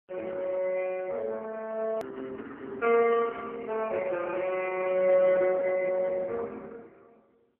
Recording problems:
telephone audio; 300 Hz to 3 kHz, AMR-NB
click at an edit; at 2 s

